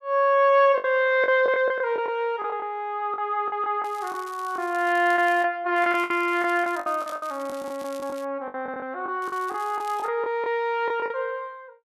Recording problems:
packet loss; 11% of the sound replaced, filled with the last packet
crackling; from 4 to 5.5 s, from 6 to 8.5 s and at 9 s; loose cable, SNR 24 dB

